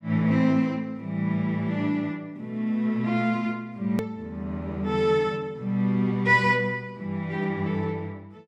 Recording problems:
hard cut with a click; at 4 s

